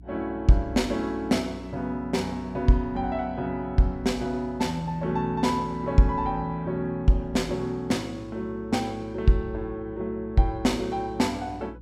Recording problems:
electrical hum; 60 Hz, harmonics up to 300 Hz, SNR 19 dB

